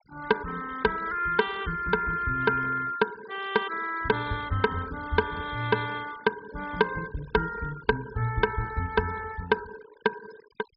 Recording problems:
low-pass filter; nothing above 5.2 kHz
denoising artefacts; signal-to-artefact ratio 18 dB

